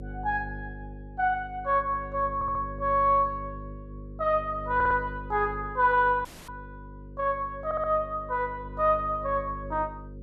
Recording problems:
electrical hum; 50 Hz, harmonics up to 550 Hz, SNR 14 dB
stutter; at 2.5 s, at 5 s and at 7.5 s
audio cutting out; at 6.5 s

